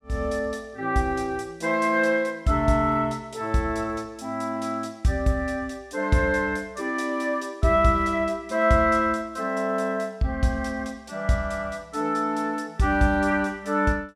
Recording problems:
none

